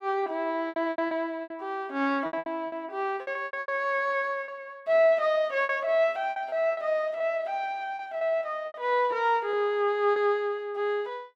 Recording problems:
packet loss; 11% of the sound replaced, filled with repeated pitch periods

